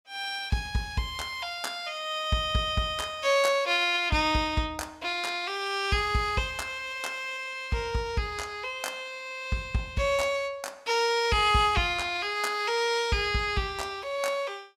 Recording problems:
none

